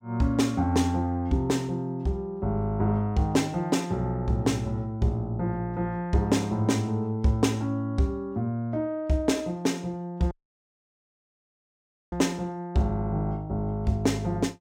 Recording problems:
dropout; at 10 s for 2 s

